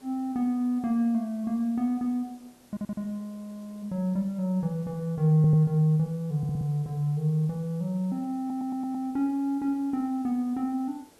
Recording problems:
hiss; SNR 28 dB
audio stuttering; 4 times, first at 2.5 s

